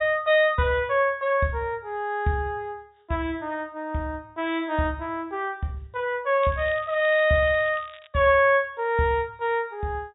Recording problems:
treble cut off; nothing above 4 kHz
crackle; from 6.5 to 8 s; loose cable, SNR 23 dB

